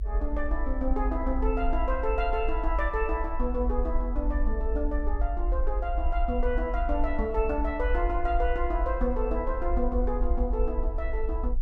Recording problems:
rumble; below 52 Hz, SNR 1 dB

